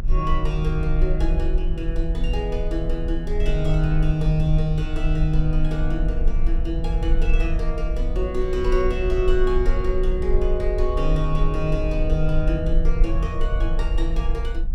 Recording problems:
low-frequency rumble; below 44 Hz, strongest tone 26 Hz, SNR 0 dB

